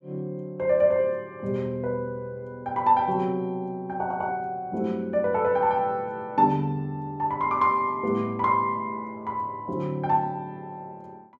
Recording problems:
none

